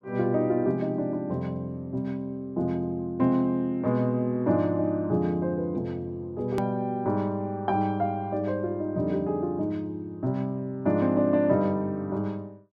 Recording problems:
hard cut with a click; at 6.5 s

